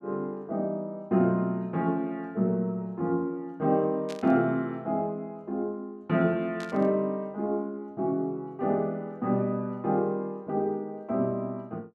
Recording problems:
burst of static; at 4 s and at 6.5 s; peak -9 dB vs average level

